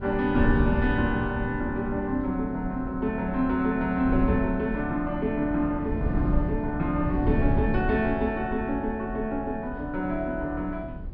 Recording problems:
treble cut off; nothing above 5.5 kHz
wind on the microphone; below 160 Hz, SNR 5 dB

